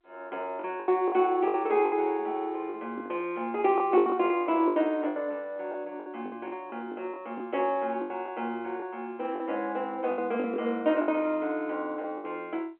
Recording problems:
telephone audio; 260 Hz to 3.3 kHz, G.711
lost packets; 11% of the sound replaced, filled with the last packet

